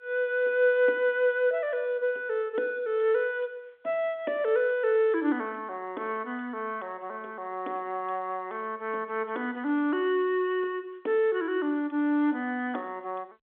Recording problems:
telephone audio; 260 Hz to 3.5 kHz, G.711

